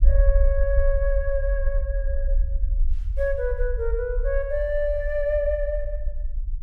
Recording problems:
low-frequency rumble; below 52 Hz, SNR 0 dB

